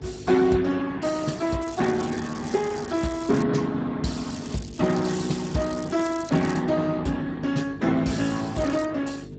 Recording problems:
codec artefacts; Speex, log-spectral distance 6 dB, nothing above 7.8 kHz
electrical hum; 50 Hz, harmonics up to 650 Hz, SNR 16 dB
crackling; from 1.5 to 3.5 s, from 4.5 to 6.5 s and at 8.5 s; loose cable, SNR 18 dB

